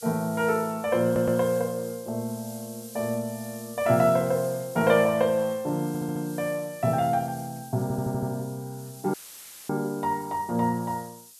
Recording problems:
hiss; SNR 17 dB
audio stuttering; at 1 s, at 6 s and at 8 s
audio cutting out; at 9 s for 0.5 s; filled with static

